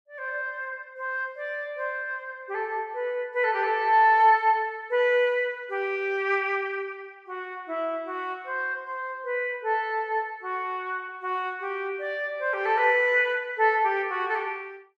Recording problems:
none

